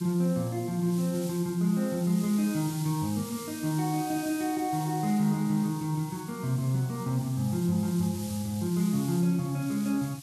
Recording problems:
hiss; SNR 14 dB

